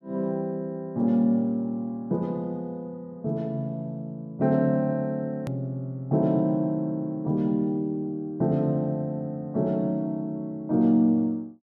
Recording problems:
click at an edit; at 5.5 s

